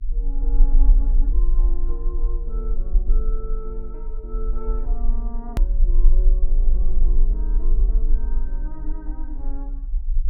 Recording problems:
electrical hum; 60 Hz, harmonics up to 300 Hz, SNR 17 dB
low-frequency rumble; below 38 Hz, strongest tone 22 Hz, SNR -16 dB
click at an edit; at 5.5 s

